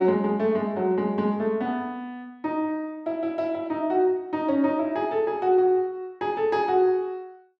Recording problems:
none

